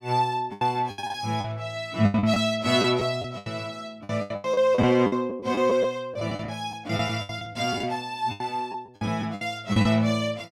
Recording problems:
lost packets; 15% of the sound replaced, filled with the last packet

